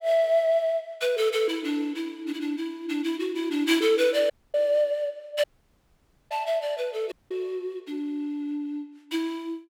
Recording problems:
dropout; at 4.5 s, at 5.5 s for 1 s and at 7 s

